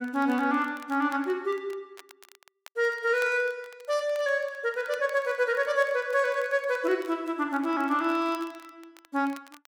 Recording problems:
crackle; vinyl, SNR 25 dB

